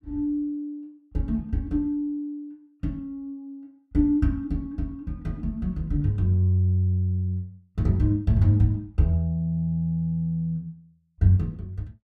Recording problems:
none

